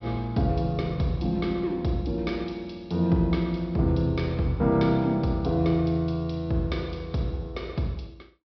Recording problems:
low-pass filter; nothing above 5.5 kHz

